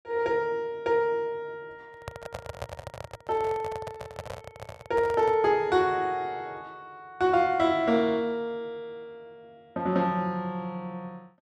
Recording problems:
handling noise; from 2 to 5.5 s; peak -5 dB vs average level

